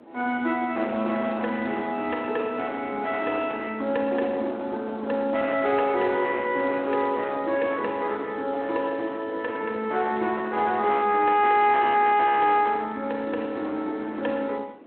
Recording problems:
phone line; 220 Hz to 3.7 kHz, Speex
distortion; hard clipping, signal-to-distortion ratio 14 dB
wind noise; below 640 Hz, SNR 19 dB

